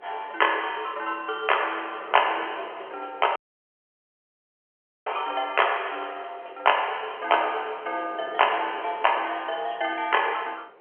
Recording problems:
telephone audio; 340 Hz to 3.2 kHz, G.711
wind noise; below 870 Hz, SNR 20 dB
audio cutting out; at 3.5 s for 1.5 s

